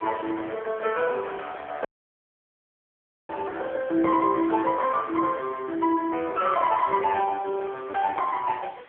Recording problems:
phone line; 280 Hz to 2.6 kHz, AMR-NB
background hiss; SNR 26 dB
audio cutting out; at 2 s for 1.5 s

